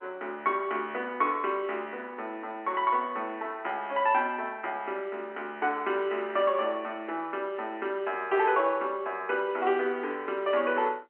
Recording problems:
phone line; 280 Hz to 3.3 kHz, G.711

